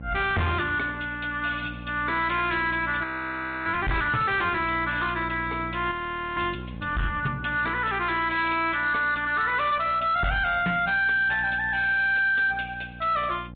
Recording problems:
treble cut off; nothing above 4 kHz
lossy codec; MP3, log-spectral distance 3 dB
distortion; soft clipping, signal-to-distortion ratio 10 dB
mains hum; 60 Hz, harmonics up to 840 Hz, SNR 16 dB
frozen audio; at 3 s for 0.5 s and at 6 s

